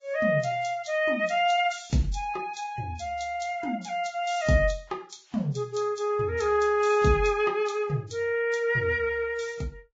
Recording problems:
codec artefacts; Vorbis, log-spectral distance 3 dB, nothing above 7.6 kHz

